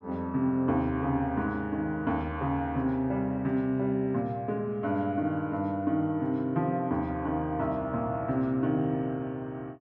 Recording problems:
none

